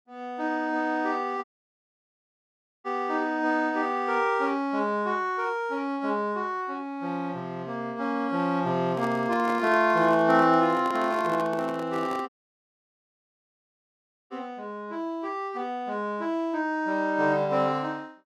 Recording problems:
dropout; at 1.5 s for 1.5 s and at 12 s for 2 s
handling noise; from 9 to 14 s; peak -7 dB vs average level

